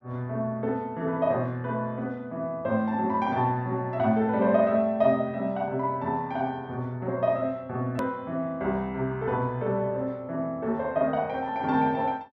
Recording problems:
edit click; at 8 s

